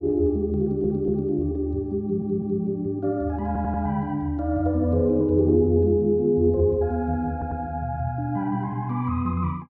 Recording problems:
stutter; 4 times, first at 0.5 s

